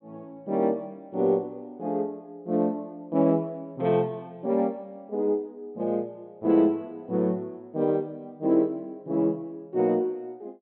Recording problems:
treble missing; nothing above 4 kHz

